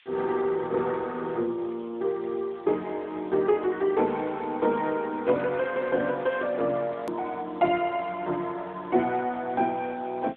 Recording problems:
phone line; 190 Hz to 3.5 kHz, AMR-NB
hiss; SNR 29 dB
edit click; at 7 s

